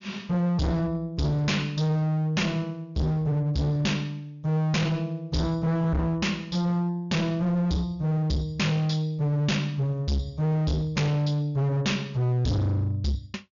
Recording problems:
treble missing; nothing above 6.9 kHz
distortion; hard clipping, signal-to-distortion ratio 6 dB

